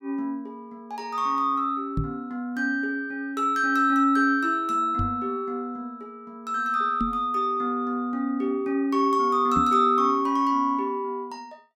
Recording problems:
knock on the microphone; 4 times, first at 2 s; peak 0 dB vs average level

